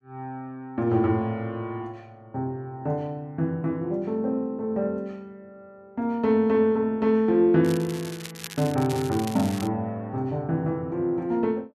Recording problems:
crackling; from 7.5 to 9.5 s; loose cable, SNR 14 dB

